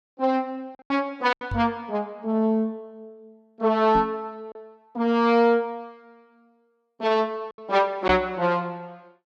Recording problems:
packet loss; 4% of the sound replaced, filled with silence
microphone bump; at 1.5 s, at 4 s and at 8 s; peak -4 dB vs average level

